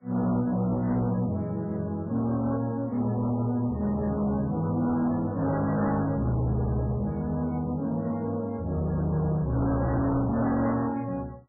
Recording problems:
codec artefacts; MP3, then MP3, log-spectral distance 2 dB
distorted audio; hard clipping, signal-to-distortion ratio 8 dB

